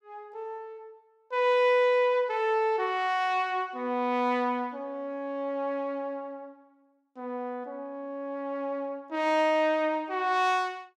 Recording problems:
none

